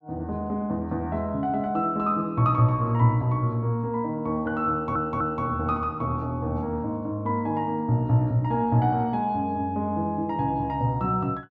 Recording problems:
audio stuttering; at 4.5 s

